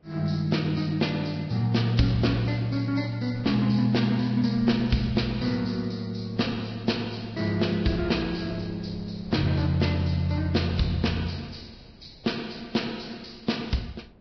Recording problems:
lossy compression; Vorbis, log-spectral distance 6 dB, nothing above 5.3 kHz
wind on the microphone; below 350 Hz, SNR 22 dB

